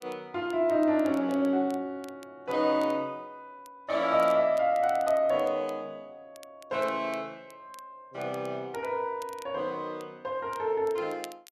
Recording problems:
crackling; vinyl, SNR 26 dB

